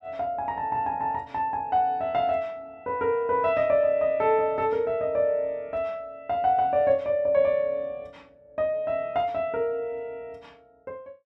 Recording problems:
none

